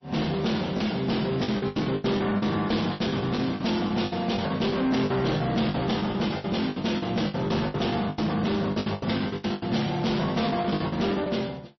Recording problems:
lossy codec; MP3, log-spectral distance 4 dB, nothing above 5.8 kHz
distortion; soft clipping, signal-to-distortion ratio 11 dB
packet loss; 16% of the sound replaced, filled with the last packet

